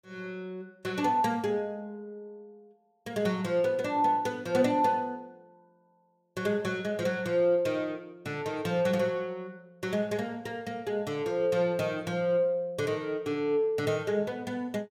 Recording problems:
none

